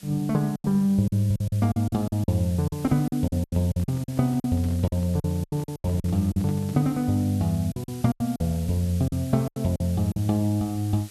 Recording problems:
hiss; SNR 20 dB
lost packets; 13% of the sound replaced, filled with silence
handling noise; from 3.5 to 7 s; peak -10 dB vs average level

